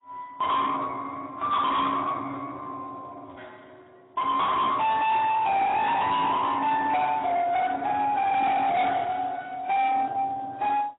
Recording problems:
lossy compression; Speex, then AAC, log-spectral distance 3 dB, nothing above 3.8 kHz
distorted audio; soft clipping, signal-to-distortion ratio 7 dB

